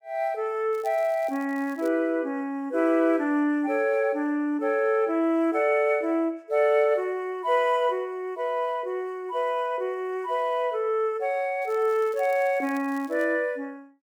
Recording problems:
crackling; from 0.5 to 2 s and from 12 to 13 s; loose cable, SNR 27 dB

